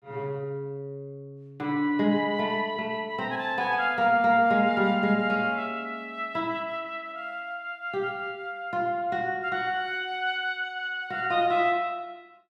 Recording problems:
none

